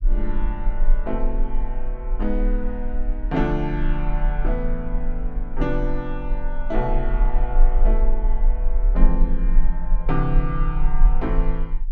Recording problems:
rumble; below 34 Hz, strongest tone 24 Hz, SNR -3 dB

